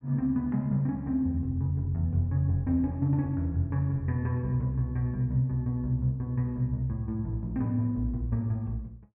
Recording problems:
none

